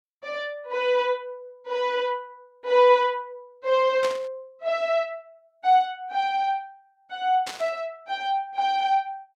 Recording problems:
static burst; at 4 s and at 7.5 s; peak -5 dB vs average level

